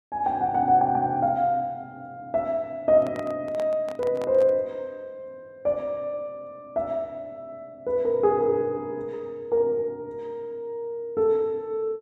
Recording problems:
microphone handling noise; from 3 to 4.5 s; peak -8 dB vs average level

